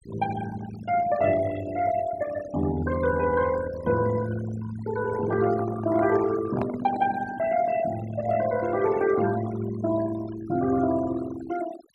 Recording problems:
denoising artefacts; signal-to-artefact ratio 13 dB
microphone handling noise; from 5 to 7 s; peak -2 dB vs average level

